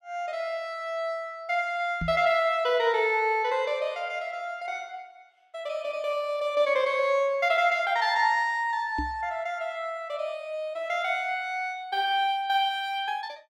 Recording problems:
knock on the microphone; at 2 s and at 9 s; peak -2 dB vs average level

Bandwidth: 16 kHz